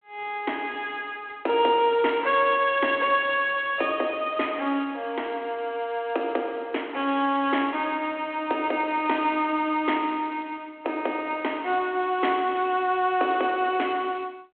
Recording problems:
phone line; 240 Hz to 3.4 kHz, G.726

